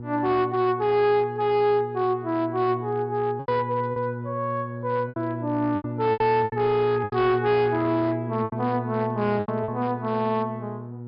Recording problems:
low-pass filter; nothing above 5.5 kHz
distortion; hard clipping, signal-to-distortion ratio 11 dB
hum; 60 Hz, harmonics up to 840 Hz, SNR 10 dB
packet loss; 7% of the sound replaced, filled with repeated pitch periods
static burst; at 7 s; peak -17 dB vs average level

